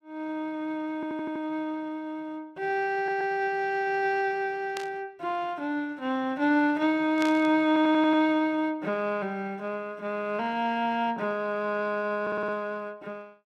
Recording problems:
audio stuttering; 4 times, first at 1 s
burst of static; at 5 s and at 7 s; peak -5 dB vs average level

